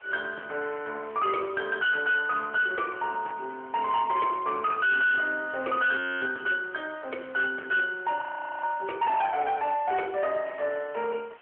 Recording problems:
phone line; 300 Hz to 3.5 kHz, AMR-NB
distortion; hard clipping, uneven, signal-to-distortion ratio 10 dB
hiss; SNR 27 dB
frozen audio; at 6 s and at 8 s

